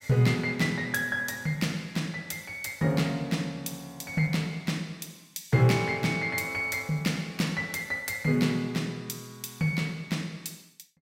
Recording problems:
none

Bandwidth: 16 kHz